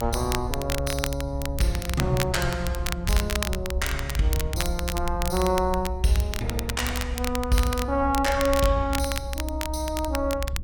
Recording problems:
rumble; below 66 Hz, strongest tone 64 Hz, SNR 6 dB
crackle; vinyl, SNR 7 dB

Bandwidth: 17.5 kHz